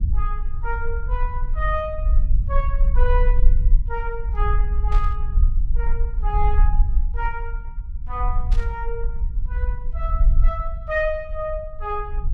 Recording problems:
low-frequency rumble; below 46 Hz, strongest tone 20 Hz, SNR -5 dB
burst of static; at 5 s and at 8.5 s; peak -8 dB vs average level

